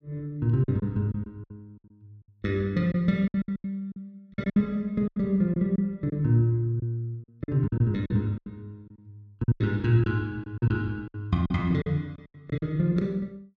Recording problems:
lost packets; 12% of the sound replaced, filled with silence

